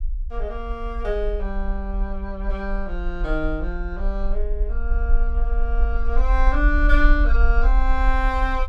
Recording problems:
low-frequency rumble; below 46 Hz, SNR -3 dB

